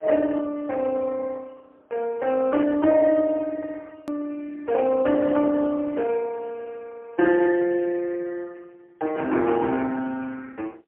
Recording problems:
telephone audio; 260 Hz to 3.3 kHz, AMR-NB, then MP3
click at an edit; at 4 s

